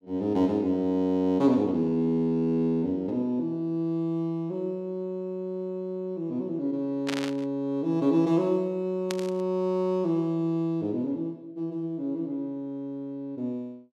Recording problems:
burst of static; at 7 s and at 9 s; peak -1 dB vs average level

